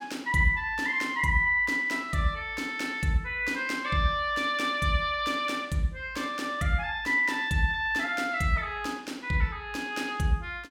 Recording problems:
none

